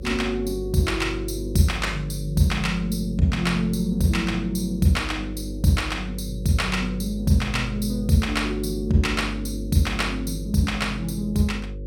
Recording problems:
mains hum; 50 Hz, harmonics up to 550 Hz, SNR 9 dB

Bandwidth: 17 kHz